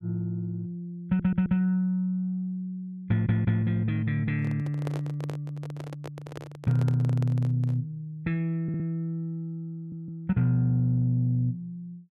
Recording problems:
audio stuttering; 4 times, first at 1 s
microphone handling noise; from 4.5 to 8 s; peak -5 dB vs average level

